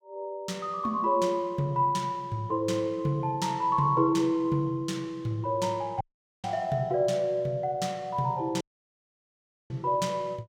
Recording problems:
audio cutting out; at 6 s and at 8.5 s for 1 s

